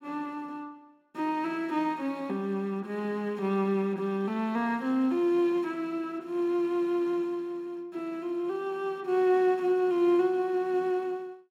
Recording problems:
none

